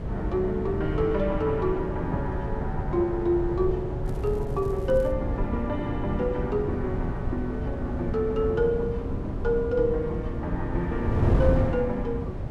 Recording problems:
wind on the microphone; below 180 Hz, SNR 3 dB
crackle; from 4 to 5 s; loose cable, SNR 29 dB

